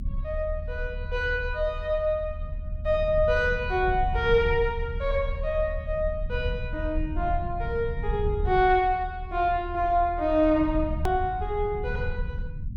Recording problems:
low-frequency rumble; below 76 Hz, SNR 7 dB
edit click; at 11 s

